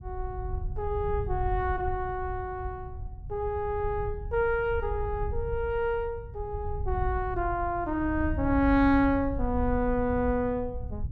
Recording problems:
rumble; below 84 Hz, SNR 7 dB

